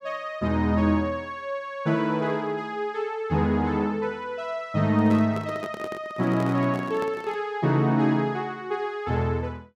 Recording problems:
handling noise; from 5 to 7.5 s; peak -5 dB vs average level

